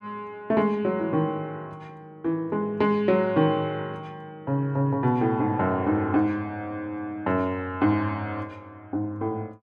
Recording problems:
none

